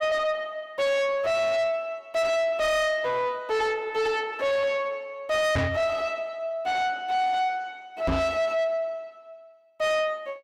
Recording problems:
distortion; soft clipping, signal-to-distortion ratio 7 dB
microphone bump; at 5.5 s and at 8 s; peak +5 dB vs average level

